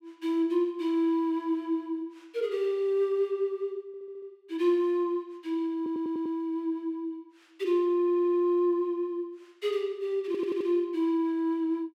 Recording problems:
stutter; 4 times, first at 4 s

